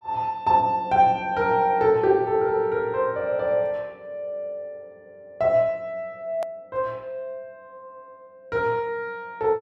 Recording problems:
click at an edit; at 6.5 s

